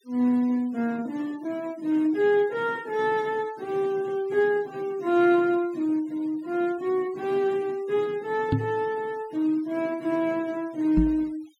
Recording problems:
noise reduction artefacts; signal-to-artefact ratio 24 dB
microphone bump; at 8.5 s and at 11 s; peak +5 dB vs average level

